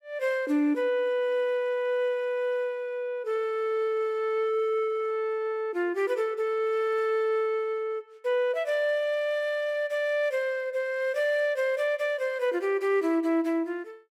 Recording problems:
none

